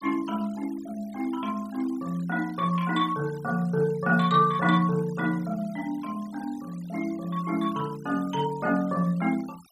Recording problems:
denoising artefacts; signal-to-artefact ratio 23 dB

